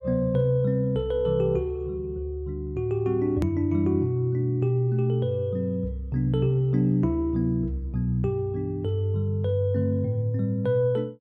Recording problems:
edit click; at 3.5 s

